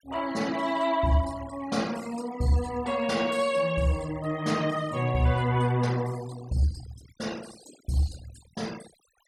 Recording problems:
denoising artefacts; signal-to-artefact ratio 18 dB

